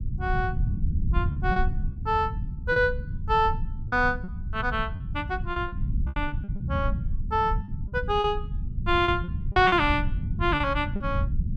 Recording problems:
low-frequency rumble; below 120 Hz, SNR 4 dB
packet loss; 9% of the sound replaced, filled with repeated pitch periods

